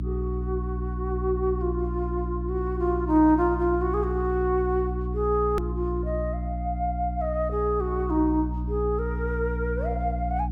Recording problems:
electrical hum; 60 Hz, harmonics up to 300 Hz, SNR 4 dB
edit click; at 5.5 s

